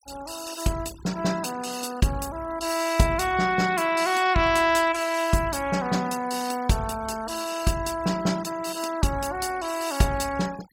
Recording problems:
denoising artefacts; signal-to-artefact ratio 17 dB

